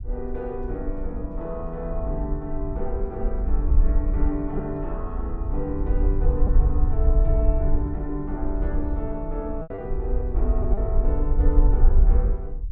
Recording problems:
rumble; below 56 Hz, SNR -5 dB
packet loss; 1.4% of the sound replaced, filled with repeated pitch periods

